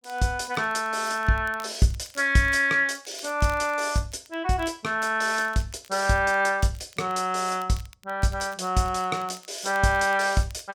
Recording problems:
crackle; vinyl, SNR 26 dB

